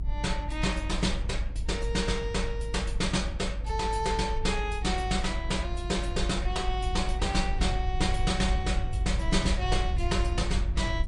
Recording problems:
codec artefacts; MP3, log-spectral distance 2 dB, nothing above 9.5 kHz
rumble; below 66 Hz, strongest tone 48 Hz, SNR 2 dB

